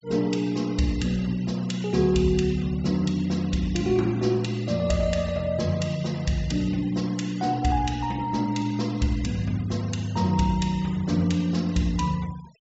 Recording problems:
treble cut off; nothing above 7.7 kHz
noise reduction artefacts; signal-to-artefact ratio 22 dB

